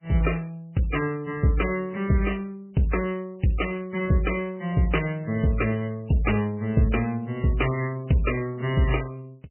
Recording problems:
codec artefacts; MP3, log-spectral distance 3 dB, nothing above 2.7 kHz

